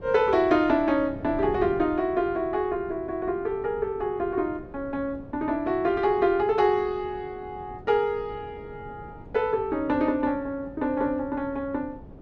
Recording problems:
wind on the microphone; below 350 Hz, SNR 18 dB

